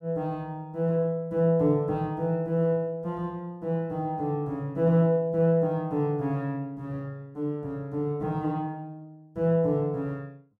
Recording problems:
none

